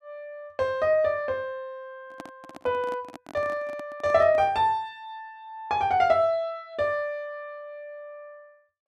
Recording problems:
handling noise; from 2 to 4.5 s; peak -10 dB vs average level

